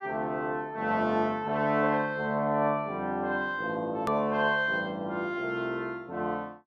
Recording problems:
edit click; at 4 s

